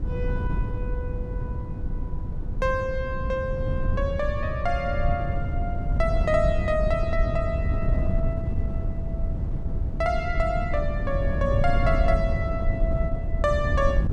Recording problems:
wind noise; below 100 Hz, SNR 0 dB

